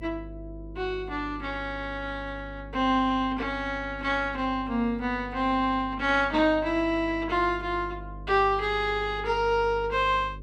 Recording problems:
hum; 50 Hz, harmonics up to 550 Hz, SNR 16 dB

